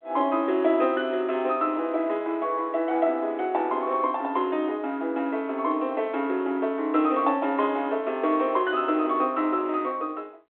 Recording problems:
telephone audio; 260 Hz to 3.6 kHz, G.726

